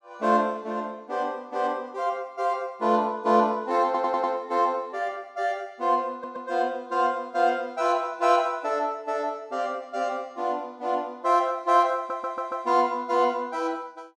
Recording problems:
stutter; at 4 s, at 6 s and at 12 s

